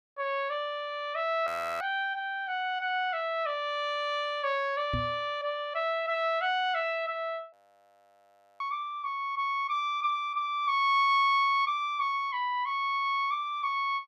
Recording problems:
frozen audio; at 1.5 s and at 7.5 s for 1 s
knock on the microphone; at 5 s; peak -1 dB vs average level

